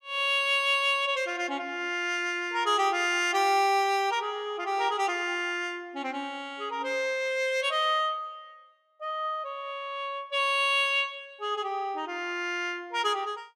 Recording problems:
none

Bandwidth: 15.5 kHz